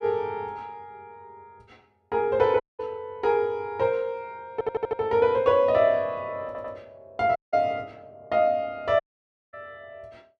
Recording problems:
dropout; at 2.5 s, at 7.5 s and at 9 s for 0.5 s
stutter; at 4.5 s and at 6.5 s

